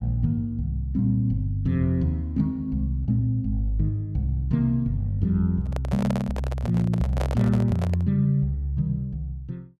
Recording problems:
microphone handling noise; from 5.5 to 8 s; peak -3 dB vs average level

